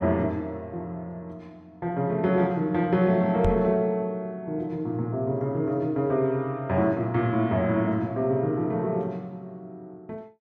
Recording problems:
knock on the microphone; at 3.5 s; peak +2 dB vs average level

